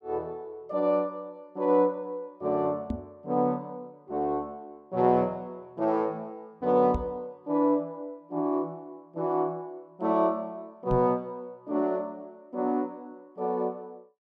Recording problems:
microphone bump; at 3 s, at 7 s and at 11 s; peak +1 dB vs average level

